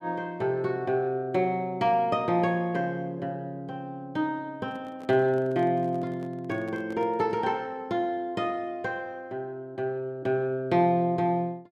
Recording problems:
handling noise; from 4.5 to 7.5 s; peak -12 dB vs average level

